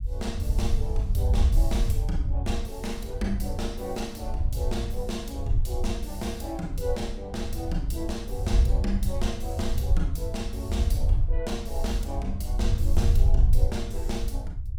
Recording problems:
low-frequency rumble; below 72 Hz, SNR -5 dB

